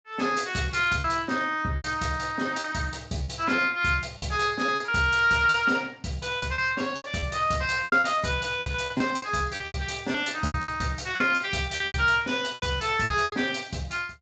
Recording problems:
lossy codec; Speex, log-spectral distance 5 dB, nothing above 7.6 kHz
lost packets; 12% of the sound replaced, filled with repeated pitch periods

